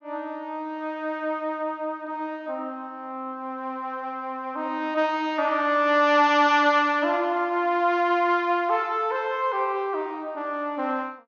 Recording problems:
treble cut off; nothing above 6.6 kHz

